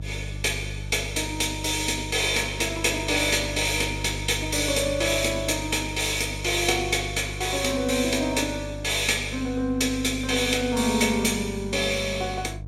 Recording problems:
hum; 50 Hz, harmonics up to 500 Hz, SNR 11 dB

